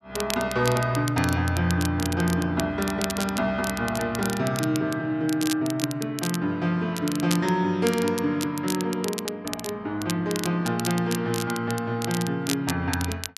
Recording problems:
crackle; vinyl, SNR 9 dB

